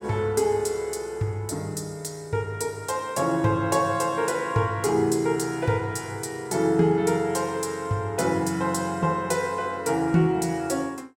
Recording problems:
none

